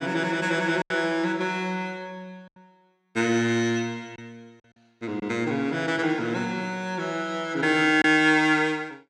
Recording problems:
lost packets; 1.8% of the sound replaced, filled with silence

